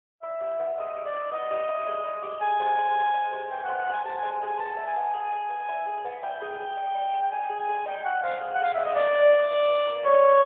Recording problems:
telephone audio; 320 Hz to 3.5 kHz, AMR-NB, then MP3

